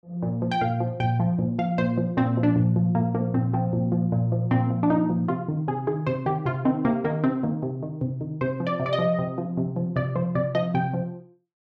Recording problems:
none

